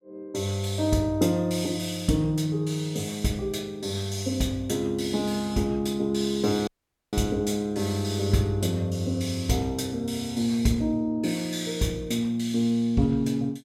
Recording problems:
audio cutting out; at 6.5 s

